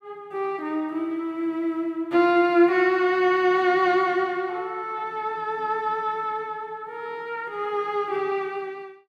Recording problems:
none

